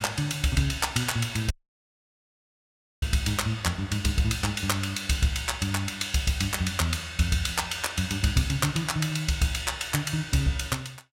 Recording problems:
dropout; at 1.5 s for 1.5 s

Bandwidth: 16 kHz